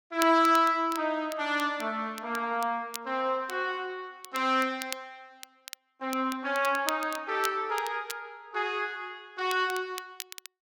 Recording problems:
crackle; vinyl, SNR 14 dB

